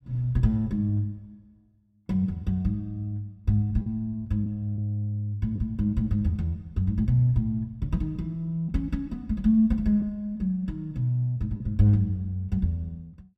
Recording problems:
lost packets; 1.1% of the sound replaced, filled with the last packet

